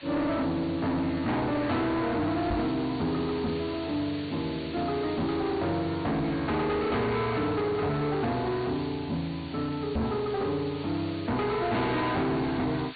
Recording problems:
treble missing; nothing above 4.6 kHz
distortion; hard clipping, signal-to-distortion ratio 6 dB
background hiss; SNR 15 dB
microphone bump; at 2.5 s and at 10 s; peak +3 dB vs average level

